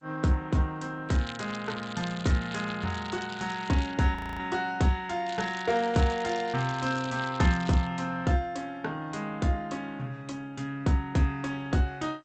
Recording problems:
lossy codec; G.722, then Opus, log-spectral distance 10 dB
crackling; from 1 to 4 s and from 5.5 to 8 s; loose cable, SNR 16 dB
audio freezing; at 4 s

